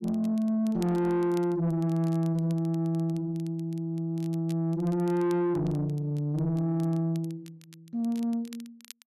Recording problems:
distorted audio; soft clipping, signal-to-distortion ratio 9 dB
crackle; vinyl, SNR 26 dB

